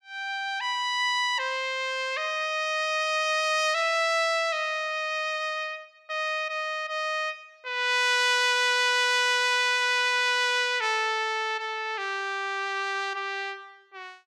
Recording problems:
none

